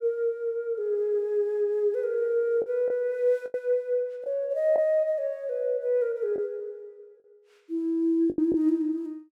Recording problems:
lost packets; 4% of the sound replaced, filled with the last packet

